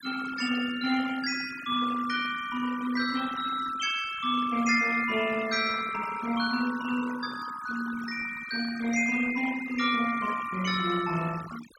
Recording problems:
noise reduction artefacts; signal-to-artefact ratio 12 dB

